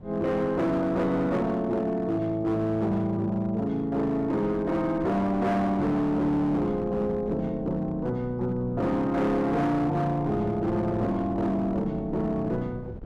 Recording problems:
distortion; hard clipping, signal-to-distortion ratio 11 dB
wind on the microphone; below 290 Hz, SNR 17 dB

